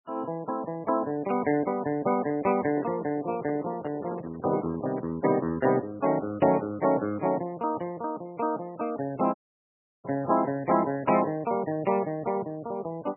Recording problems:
lossy compression; MP3, log-spectral distance 3 dB, nothing above 2.4 kHz
handling noise; from 2.5 to 5 s; peak -3 dB vs average level
audio cutting out; at 9.5 s for 0.5 s

